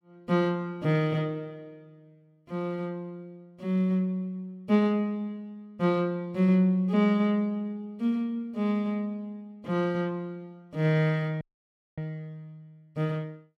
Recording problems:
dropout; at 11 s for 0.5 s

